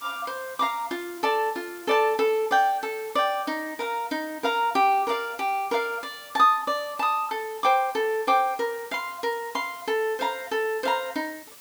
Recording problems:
hiss; slope 0 dB per octave, SNR 20 dB

